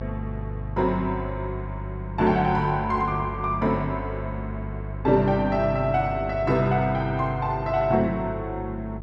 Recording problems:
electrical hum; 50 Hz, harmonics up to 500 Hz, SNR 10 dB

